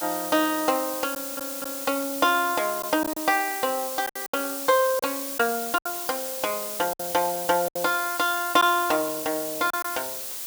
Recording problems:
hiss; slope +1 dB per octave, SNR 5 dB
packet loss; 5% of the sound replaced, filled with silence
audio stuttering; at 1 s

